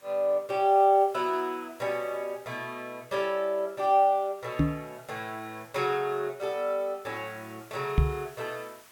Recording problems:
background hiss; SNR 26 dB
microphone thump; at 4.5 s and at 8 s; peak +8 dB vs average level

